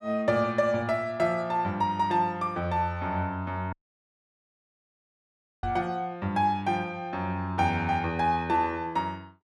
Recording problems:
dropout; at 3.5 s for 2 s
microphone bump; at 5.5 s; peak -5 dB vs average level

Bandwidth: 13.5 kHz